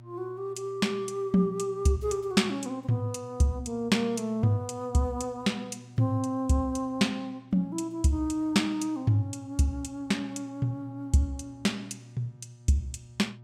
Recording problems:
hum; 60 Hz, harmonics up to 600 Hz, SNR 22 dB

